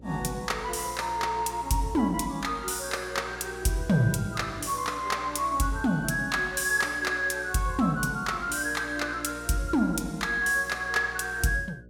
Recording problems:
electrical hum; 60 Hz, harmonics up to 600 Hz, SNR 20 dB

